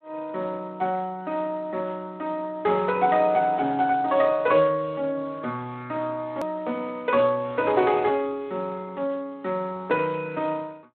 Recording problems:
phone line; 130 Hz to 3.8 kHz, Speex
hard cut with a click; at 6.5 s

